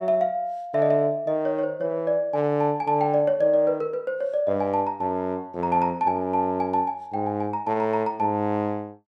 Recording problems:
none

